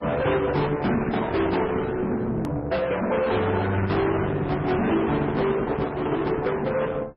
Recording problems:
codec artefacts; Opus, then MP3, log-spectral distance 3 dB, nothing above 13.1 kHz
distorted audio; soft clipping, signal-to-distortion ratio 6 dB
click at an edit; at 2.5 s

